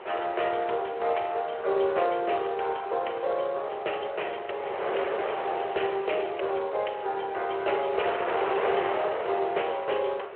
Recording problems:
phone line; 340 Hz to 3.2 kHz, Speex
wind noise; below 1.3 kHz, SNR 7 dB

